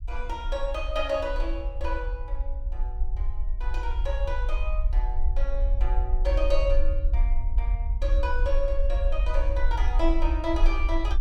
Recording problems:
rumble; below 48 Hz, SNR -3 dB

